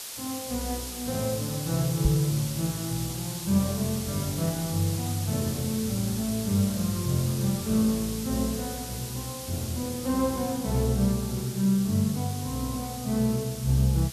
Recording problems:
background hiss; slope +1 dB per octave, SNR 8 dB
microphone bump; at 2 s; peak +7 dB vs average level

